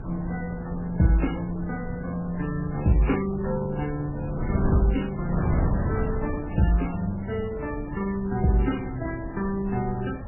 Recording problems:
codec artefacts; MP3, then MP3, log-spectral distance 4 dB, nothing above 2.7 kHz
wind on the microphone; below 240 Hz, SNR 6 dB

